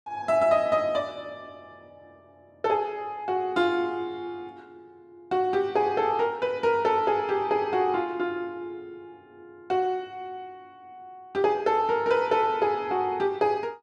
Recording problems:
none

